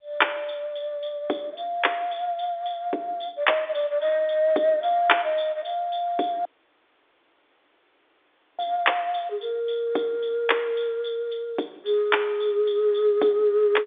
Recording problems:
phone line; 260 Hz to 3.6 kHz, G.711
audio cutting out; at 6.5 s for 2 s

